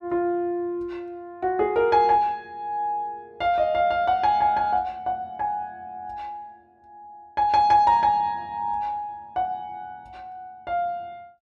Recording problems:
none

